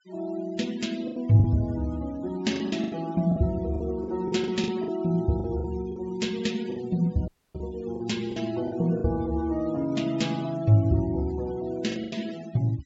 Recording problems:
treble cut off; nothing above 8 kHz
denoising artefacts; signal-to-artefact ratio 20 dB
packet loss; 8% of the sound replaced, filled with the last packet
dropout; at 7.5 s

